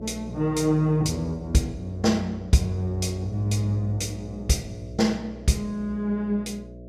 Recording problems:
hum; 60 Hz, harmonics up to 660 Hz, SNR 14 dB

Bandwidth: 15.5 kHz